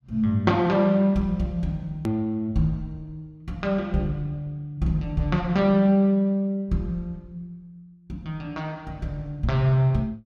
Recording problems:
click at an edit; at 2 s

